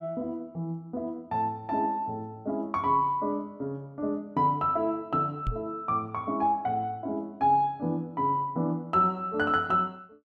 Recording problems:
knock on the microphone; at 5.5 s; peak 0 dB vs average level

